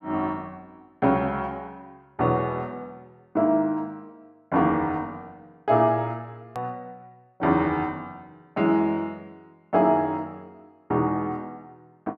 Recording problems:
edit click; at 6.5 s

